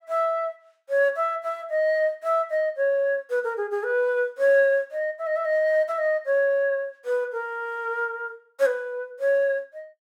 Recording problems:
none

